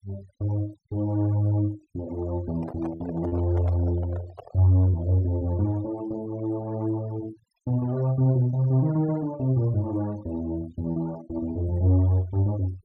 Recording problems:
noise reduction artefacts; signal-to-artefact ratio 22 dB
packet loss; 1% of the sound replaced, filled with repeated pitch periods
microphone handling noise; from 2.5 to 4.5 s; peak -10 dB vs average level

